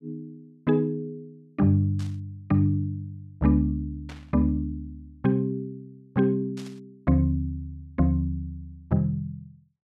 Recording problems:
static burst; at 2 s, at 4 s and at 6.5 s; peak -14 dB vs average level

